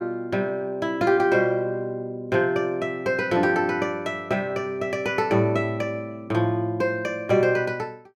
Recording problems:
none

